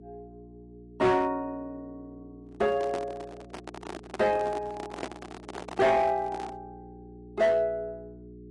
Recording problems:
lossy codec; AAC, log-spectral distance 2 dB, nothing above 10.4 kHz
distorted audio; hard clipping, signal-to-distortion ratio 11 dB
hum; 60 Hz, harmonics up to 420 Hz, SNR 20 dB
handling noise; from 2.5 to 6.5 s; peak -2 dB vs average level

